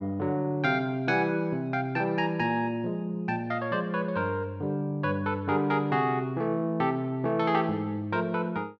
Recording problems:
none

